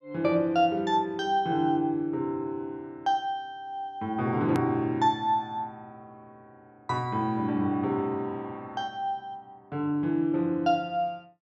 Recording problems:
edit click; at 4.5 s

